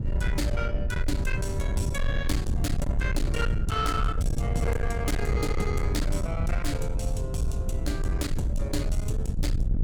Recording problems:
distortion; soft clipping, signal-to-distortion ratio 8 dB
low-frequency rumble; below 100 Hz, SNR -2 dB

